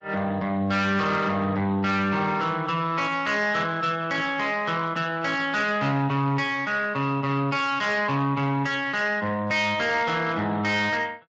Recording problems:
lossy codec; Speex, then MP3, log-spectral distance 3 dB, nothing above 7.1 kHz
distorted audio; soft clipping, signal-to-distortion ratio 12 dB

